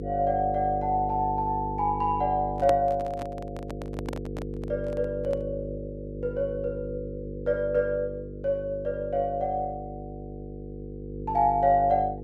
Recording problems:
electrical hum; 50 Hz, harmonics up to 500 Hz, SNR 9 dB
handling noise; from 2.5 to 5.5 s; peak 0 dB vs average level

